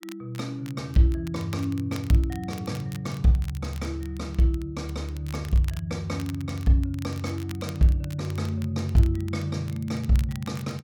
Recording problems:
crackle; vinyl, SNR 21 dB

